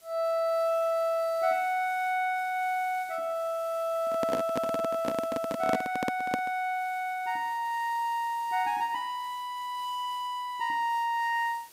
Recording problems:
hiss; slope 0 dB per octave, SNR 23 dB
microphone handling noise; from 4 to 6.5 s; peak +3 dB vs average level

